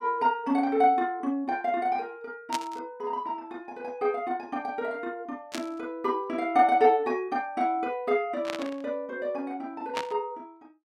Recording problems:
static burst; 4 times, first at 2.5 s; peak -1 dB vs average level

